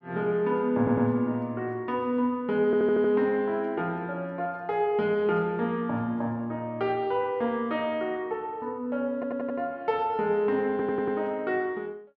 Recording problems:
stutter; 4 times, first at 1 s

